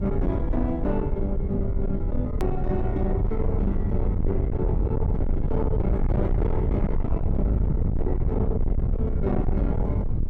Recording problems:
distortion; soft clipping, signal-to-distortion ratio 6 dB
low-frequency rumble; below 120 Hz, SNR -2 dB
edit click; at 2.5 s

